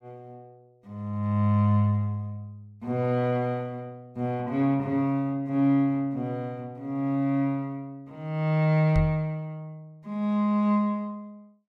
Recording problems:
microphone bump; at 9 s; peak +2 dB vs average level

